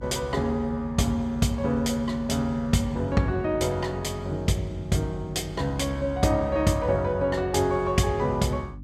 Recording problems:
electrical hum; 50 Hz, harmonics up to 300 Hz, SNR 16 dB

